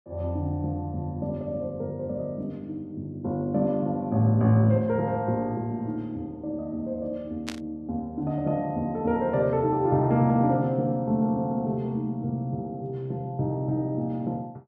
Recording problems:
burst of static; at 7.5 s; peak -3 dB vs average level

